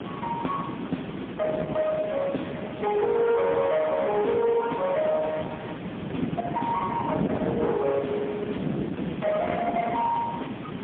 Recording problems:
phone line; 710 Hz to 2.1 kHz, AMR-NB, then MP3
distortion; soft clipping, signal-to-distortion ratio 7 dB
background hiss; SNR 7 dB
wind noise; below 670 Hz, SNR 4 dB

